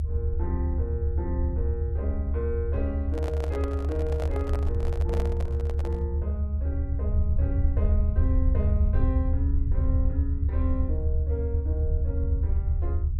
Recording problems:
rumble; below 80 Hz, strongest tone 72 Hz, SNR -8 dB
microphone handling noise; from 3 to 6 s; peak +2 dB vs average level

